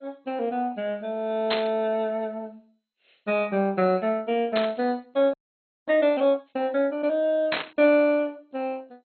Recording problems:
codec artefacts; MP2, log-spectral distance 3 dB, nothing above 3.8 kHz
static burst; at 1.5 s, at 4.5 s and at 7.5 s; peak +2 dB vs average level
audio freezing; at 5.5 s for 0.5 s

